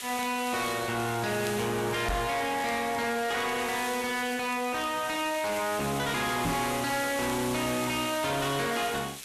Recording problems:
distorted audio; soft clipping, signal-to-distortion ratio 6 dB
hiss; SNR 9 dB
crackling; vinyl, SNR 23 dB
microphone bump; at 2 s and at 6.5 s; peak +3 dB vs average level

